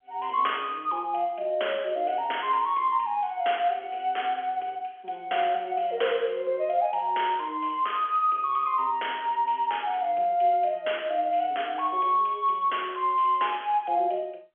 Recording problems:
telephone audio; 320 Hz to 3.4 kHz, G.711

